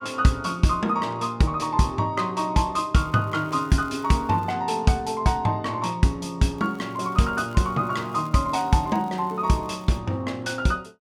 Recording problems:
crackling; from 3 to 4.5 s and from 6.5 to 10 s; loose cable, SNR 29 dB

